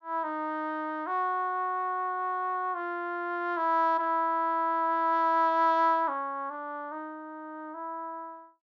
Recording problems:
treble missing; nothing above 8 kHz

